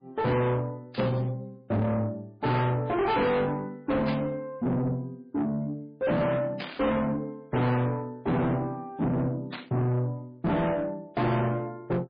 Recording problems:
lossy compression; MP3, log-spectral distance 2 dB, nothing above 4.8 kHz
distortion; soft clipping, signal-to-distortion ratio 6 dB
static burst; 4 times, first at 1 s; peak -4 dB vs average level

